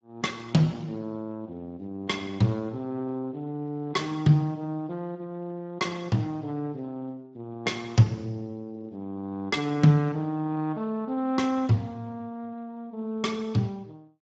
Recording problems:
lossy codec; Speex, log-spectral distance 2 dB, nothing above 7.3 kHz

